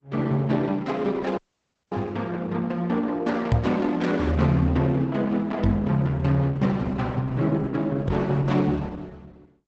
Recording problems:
lossy compression; Opus, log-spectral distance 3 dB, nothing above 8 kHz
audio cutting out; at 1.5 s for 0.5 s
microphone thump; at 3.5 s, at 5.5 s and at 8 s; peak +6 dB vs average level

